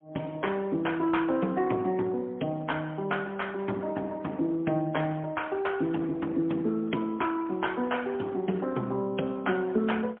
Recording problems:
telephone audio; 150 Hz to 3.3 kHz, AMR-NB, then MP3

